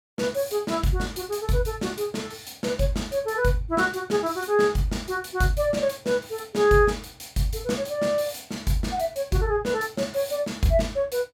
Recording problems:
none

